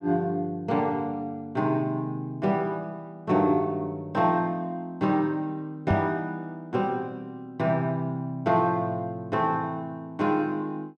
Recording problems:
knock on the microphone; at 6 s; peak +4 dB vs average level

